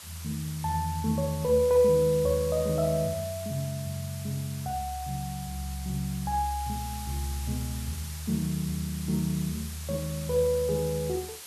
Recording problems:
hiss; slope +1 dB per octave, SNR 12 dB

